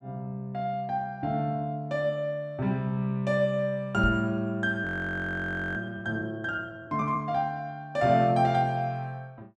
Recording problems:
knock on the microphone; at 4 s; peak 0 dB vs average level
audio freezing; at 5 s for 1 s

